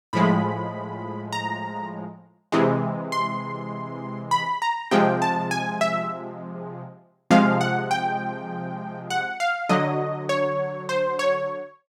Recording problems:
none

